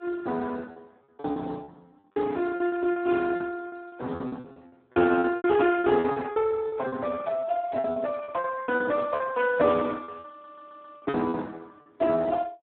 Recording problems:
telephone audio; 190 Hz to 2.1 kHz, Speex
packet loss; 14% of the sound replaced, filled with repeated pitch periods
stutter; at 10 s

